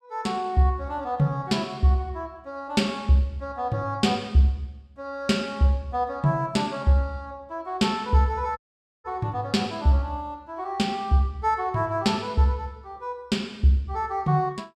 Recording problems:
dropout; at 8.5 s

